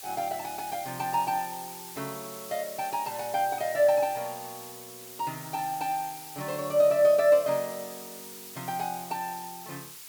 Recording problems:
background hiss; slope +2 dB per octave, SNR 13 dB

